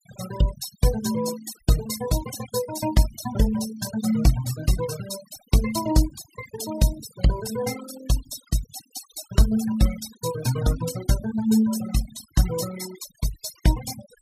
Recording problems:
noise reduction artefacts; signal-to-artefact ratio 11 dB

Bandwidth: 15.5 kHz